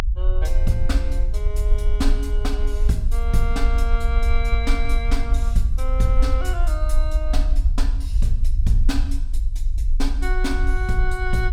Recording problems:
rumble; below 50 Hz, strongest tone 24 Hz, SNR -5 dB

